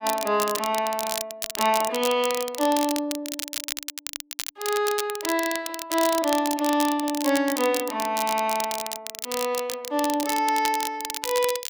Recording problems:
crackling; vinyl, SNR 6 dB

